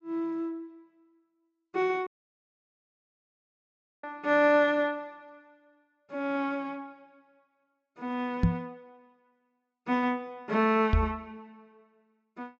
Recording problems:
treble missing; nothing above 8 kHz
dropout; at 2 s for 2 s
microphone thump; at 8.5 s and at 11 s; peak +8 dB vs average level

